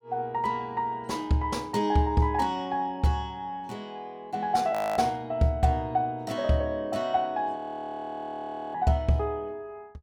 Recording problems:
audio freezing; at 4.5 s and at 7.5 s for 1 s

